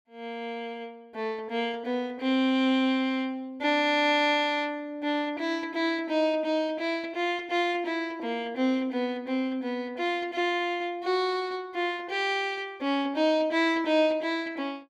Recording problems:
none

